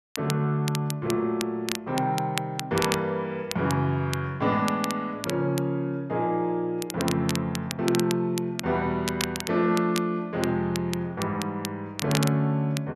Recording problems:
crackling; vinyl, SNR 9 dB

